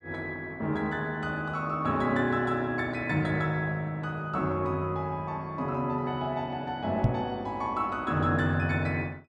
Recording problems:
microphone thump; at 7 s; peak +9 dB vs average level

